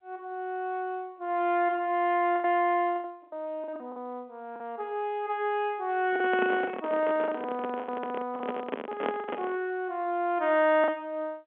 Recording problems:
phone line; 240 Hz to 3.4 kHz, G.711
packet loss; 7% of the sound replaced, filled with the last packet
handling noise; from 6 to 9.5 s; peak +1 dB vs average level

